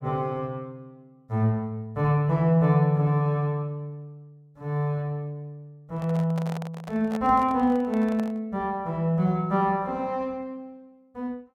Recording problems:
handling noise; from 6 to 8.5 s; peak -6 dB vs average level

